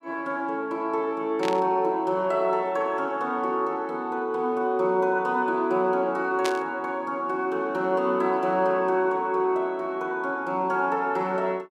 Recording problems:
burst of static; at 1.5 s and at 6.5 s; peak -1 dB vs average level

